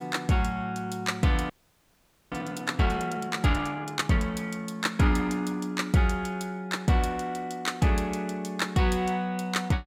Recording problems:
audio freezing; at 1.5 s for 1 s

